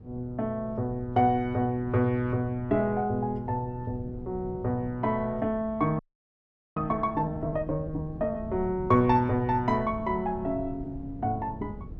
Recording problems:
wind on the microphone; below 190 Hz, SNR 15 dB
frozen audio; at 6 s for 1 s

